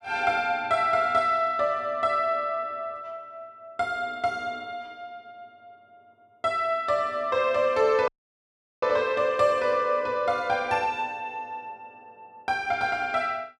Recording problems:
dropout; at 8 s for 0.5 s

